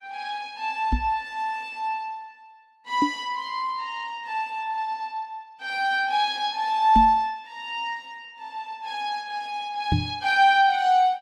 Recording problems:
lossy codec; Opus, log-spectral distance 2 dB, nothing above 18.3 kHz
microphone thump; 4 times, first at 1 s; peak +4 dB vs average level

